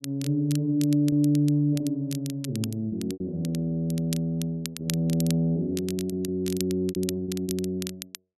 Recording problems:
crackle; vinyl, SNR 13 dB
packet loss; 6% of the sound replaced, filled with repeated pitch periods

